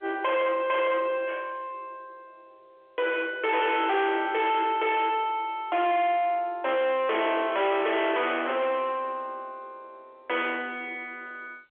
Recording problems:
telephone audio; 280 Hz to 3.5 kHz, G.711
distorted audio; soft clipping, signal-to-distortion ratio 6 dB
static burst; at 7.5 s; peak -17 dB vs average level

